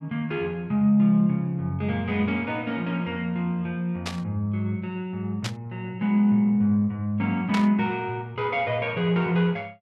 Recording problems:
burst of static; at 4 s, at 5.5 s and at 7.5 s; peak -1 dB vs average level

